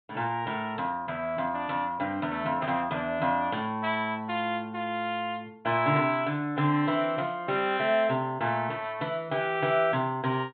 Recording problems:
treble missing; nothing above 4 kHz

